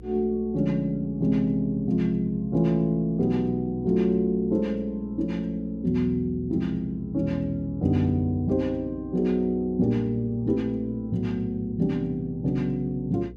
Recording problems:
hum; 60 Hz, harmonics up to 480 Hz, SNR 18 dB

